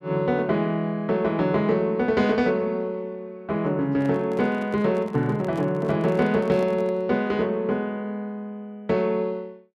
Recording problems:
microphone handling noise; from 4 to 7 s; peak -10 dB vs average level

